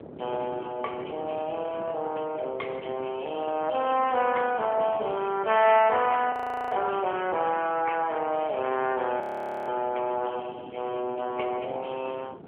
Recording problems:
telephone audio; 320 Hz to 3.1 kHz, AMR-NB
wind on the microphone; below 510 Hz, SNR 18 dB
frozen audio; at 6.5 s and at 9 s

